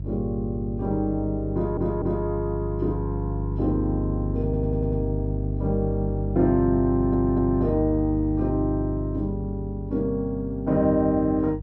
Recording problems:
hum; 50 Hz, harmonics up to 350 Hz, SNR 5 dB
audio stuttering; at 1.5 s, at 4.5 s and at 7 s

